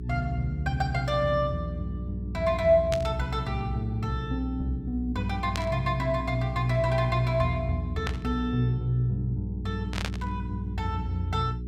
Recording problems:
hum; 60 Hz, harmonics up to 420 Hz, SNR 7 dB
burst of static; 4 times, first at 3 s; peak 0 dB vs average level

